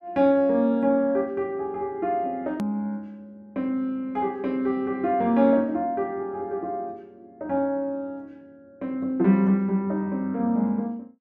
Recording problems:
hard cut with a click; at 2.5 s

